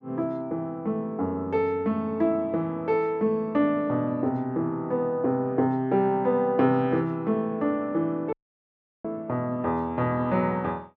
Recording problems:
dropout; at 8.5 s for 0.5 s

